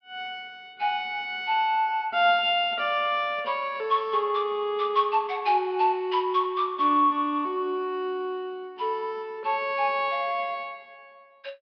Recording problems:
treble cut off; nothing above 5.5 kHz

